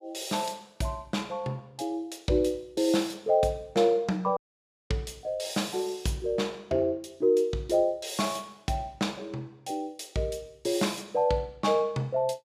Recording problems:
dropout; at 4.5 s for 0.5 s

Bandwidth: 15 kHz